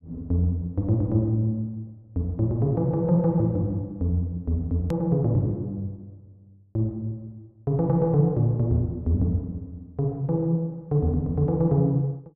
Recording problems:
click at an edit; at 5 s

